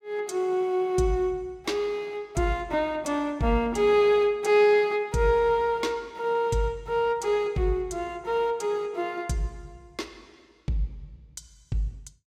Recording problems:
none

